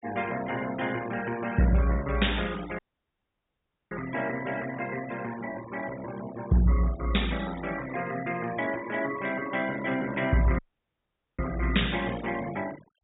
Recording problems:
treble cut off; nothing above 4 kHz
denoising artefacts; signal-to-artefact ratio 15 dB
audio cutting out; at 3 s for 1 s and at 11 s for 1 s

